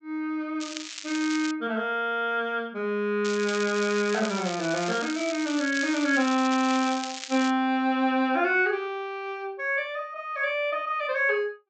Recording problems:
low-pass filter; nothing above 8 kHz
crackling; at 0.5 s and from 3.5 to 7.5 s; loose cable, SNR 10 dB

